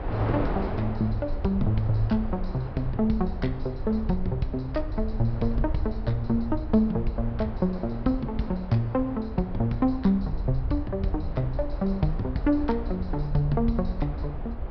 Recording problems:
low-pass filter; nothing above 5.5 kHz
low-frequency rumble; below 66 Hz, SNR 8 dB
wind on the microphone; below 820 Hz, SNR 12 dB

